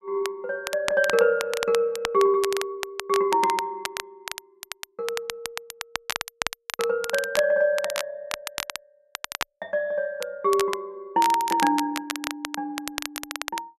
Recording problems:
crackle; vinyl, SNR 8 dB

